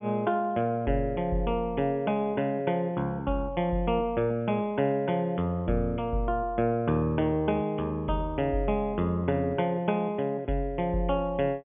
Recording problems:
low-pass filter; nothing above 3.5 kHz

